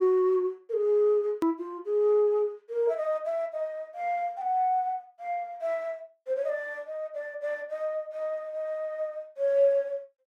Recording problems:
hard cut with a click; at 1.5 s

